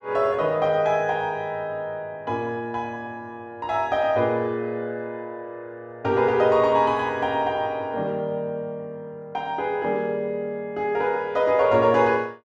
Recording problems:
none

